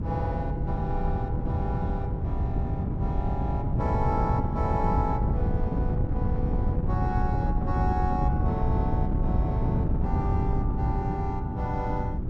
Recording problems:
electrical hum; 60 Hz, harmonics up to 360 Hz, SNR 5 dB
wind on the microphone; below 160 Hz, SNR -5 dB

